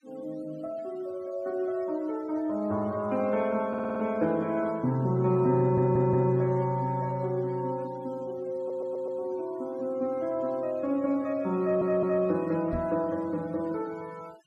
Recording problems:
noise reduction artefacts; signal-to-artefact ratio 26 dB
stutter; 4 times, first at 3.5 s
microphone thump; at 13 s; peak -3 dB vs average level

